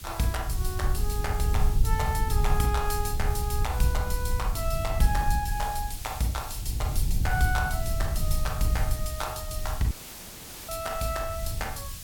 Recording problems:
background hiss; slope +2 dB per octave, SNR 10 dB
rumble; below 82 Hz, SNR 0 dB
dropout; at 10 s for 1 s

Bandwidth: 17 kHz